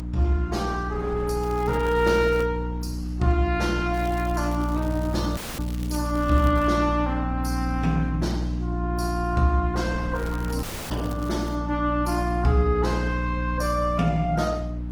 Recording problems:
lossy compression; Opus, log-spectral distance 3 dB, nothing above 19 kHz
hum; 60 Hz, harmonics up to 300 Hz, SNR 4 dB
wind on the microphone; below 510 Hz, SNR 22 dB
crackling; from 1.5 to 2.5 s, from 4 to 6.5 s and from 10 to 12 s; loose cable, SNR 22 dB
audio cutting out; at 5.5 s and at 11 s

